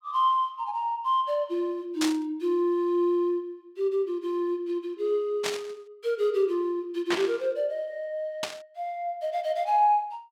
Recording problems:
burst of static; 4 times, first at 2 s; peak +2 dB vs average level

